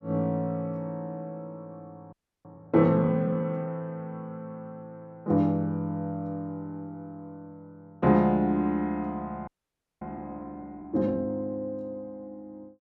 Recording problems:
audio freezing; at 2 s and at 9.5 s for 0.5 s

